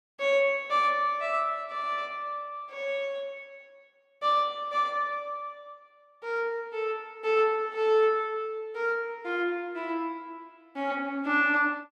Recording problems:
none

